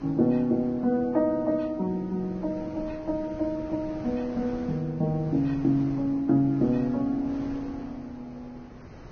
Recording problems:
lossy codec; Vorbis, log-spectral distance 2 dB
wind noise; below 640 Hz, SNR 18 dB

